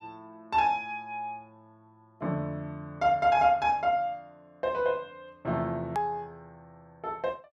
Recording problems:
edit click; at 6 s

